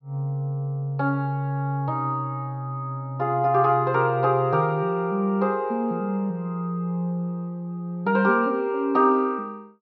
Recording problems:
low-pass filter; nothing above 5.5 kHz

